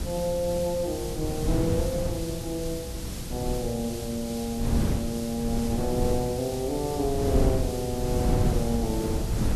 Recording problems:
hiss; slope +2 dB per octave, SNR 10 dB
wind noise; below 190 Hz, SNR 1 dB

